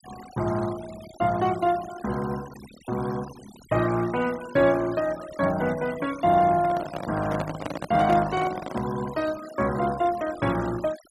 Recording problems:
noise reduction artefacts; signal-to-artefact ratio 18 dB
microphone handling noise; from 6.5 to 9 s; peak -2 dB vs average level

